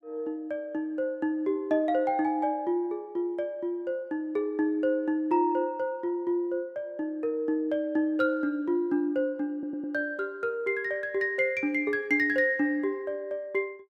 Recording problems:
stutter; at 9.5 s

